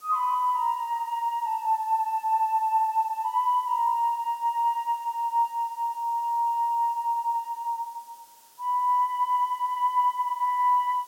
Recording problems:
hiss; SNR 27 dB

